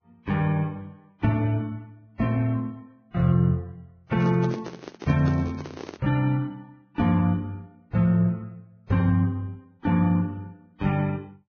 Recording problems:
lossy codec; Vorbis, then Vorbis, log-spectral distance 2 dB
microphone handling noise; from 4 to 6 s; peak -6 dB vs average level

